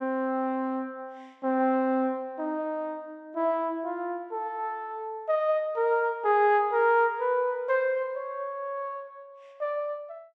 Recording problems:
none

